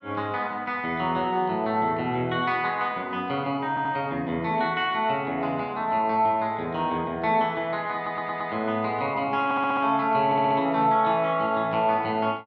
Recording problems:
audio stuttering; 4 times, first at 3.5 s

